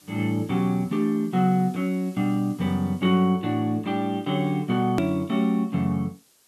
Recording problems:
hiss; SNR 29 dB
hard cut with a click; at 5 s

